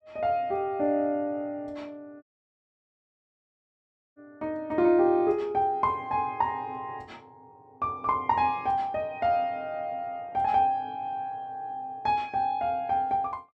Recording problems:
dropout; at 2 s for 2 s

